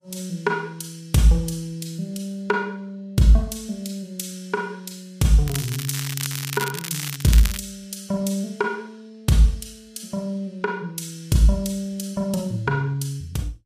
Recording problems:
lossy compression; Vorbis, log-spectral distance 3 dB, nothing above 15.1 kHz
crackling; from 5.5 to 7.5 s; loose cable, SNR 7 dB

